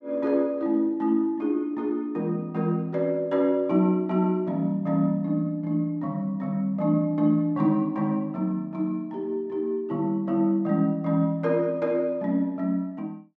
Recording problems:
none

